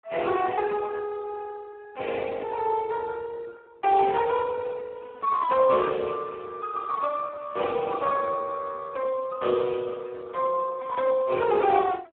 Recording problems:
telephone audio; 190 Hz to 2.6 kHz, Speex

